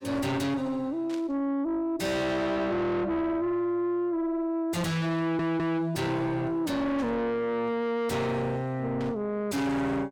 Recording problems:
distorted audio; soft clipping, signal-to-distortion ratio 5 dB
burst of static; at 1 s, at 7 s and at 9 s; peak -12 dB vs average level
audio stuttering; at 5 s

